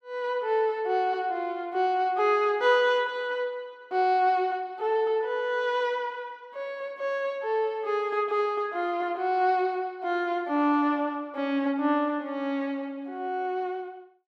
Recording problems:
none

